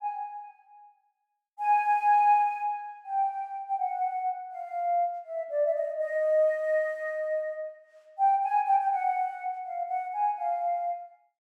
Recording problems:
none

